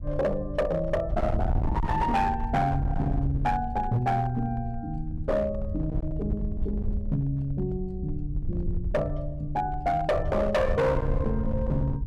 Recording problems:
distorted audio; hard clipping, signal-to-distortion ratio 8 dB
wind on the microphone; below 94 Hz, SNR 5 dB

